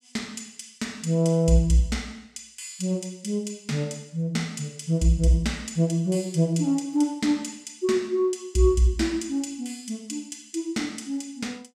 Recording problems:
none

